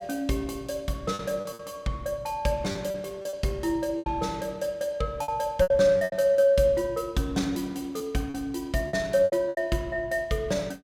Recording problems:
lost packets; 8% of the sound replaced, filled with repeated pitch periods

